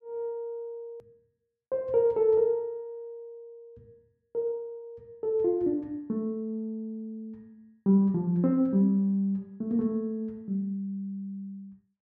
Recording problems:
click at an edit; at 1 s

